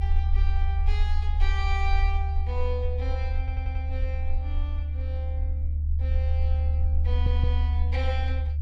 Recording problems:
rumble; below 76 Hz, SNR -10 dB
stutter; at 3.5 s and at 7 s

